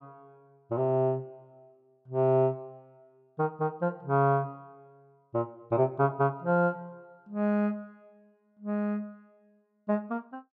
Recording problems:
none

